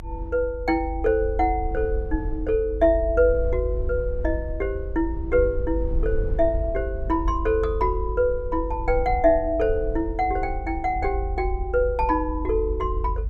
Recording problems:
low-frequency rumble; below 64 Hz, strongest tone 50 Hz, SNR 6 dB

